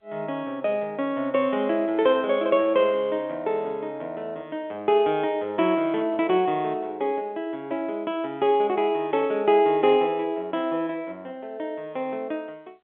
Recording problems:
phone line; 280 Hz to 3.6 kHz, G.711

